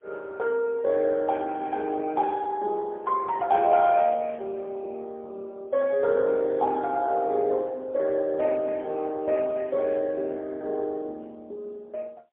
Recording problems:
phone line; 320 Hz to 2.3 kHz, AMR-NB, then MP3

